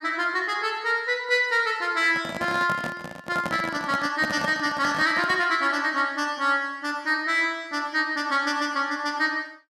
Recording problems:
microphone handling noise; from 2 to 5.5 s; peak -3 dB vs average level

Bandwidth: 14.5 kHz